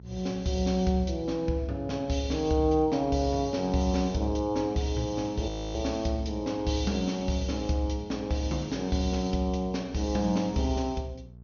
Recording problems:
low-pass filter; nothing above 6.6 kHz
mains hum; 60 Hz, harmonics up to 480 Hz, SNR 19 dB
audio freezing; at 5.5 s

